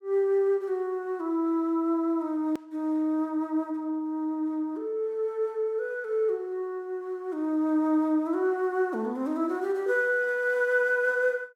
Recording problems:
hard cut with a click; at 2.5 s

